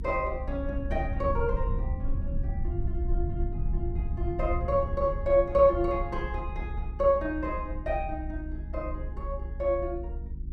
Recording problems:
electrical hum; 50 Hz, harmonics up to 350 Hz, SNR 17 dB
rumble; below 72 Hz, SNR 5 dB

